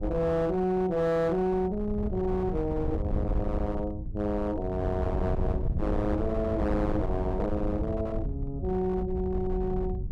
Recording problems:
distorted audio; hard clipping, signal-to-distortion ratio 12 dB
wind on the microphone; below 110 Hz, SNR 4 dB

